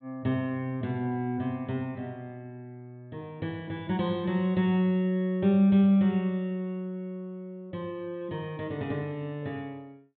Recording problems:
treble cut off; nothing above 4 kHz

